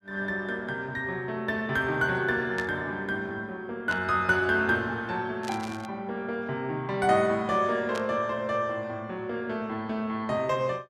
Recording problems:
static burst; 4 times, first at 2.5 s; peak -6 dB vs average level

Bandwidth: 14 kHz